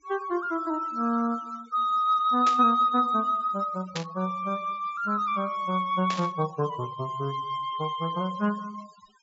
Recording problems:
treble cut off; nothing above 8 kHz
denoising artefacts; signal-to-artefact ratio 23 dB
static burst; at 2.5 s, at 4 s and at 6 s; peak -2 dB vs average level

